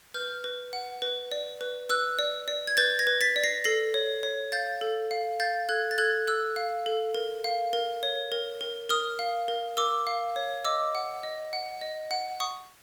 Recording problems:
background hiss; SNR 26 dB

